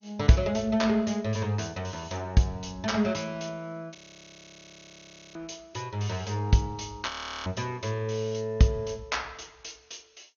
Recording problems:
lossy compression; MP2, log-spectral distance 5 dB, nothing above 6.7 kHz
audio freezing; at 4 s for 1.5 s and at 7 s

